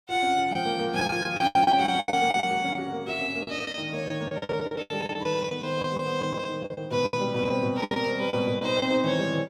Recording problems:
lost packets; 14% of the sound replaced, filled with the last packet

